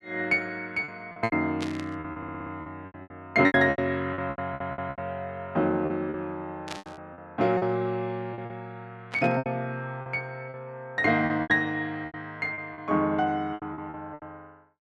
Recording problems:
packet loss; 13% of the sound replaced, filled with repeated pitch periods
burst of static; at 1.5 s, at 6.5 s and at 9 s; peak -4 dB vs average level
stutter; at 2 s and at 4.5 s

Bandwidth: 12 kHz